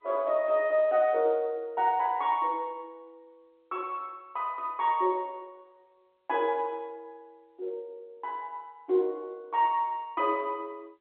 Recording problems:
phone line; 240 Hz to 3.7 kHz, G.711

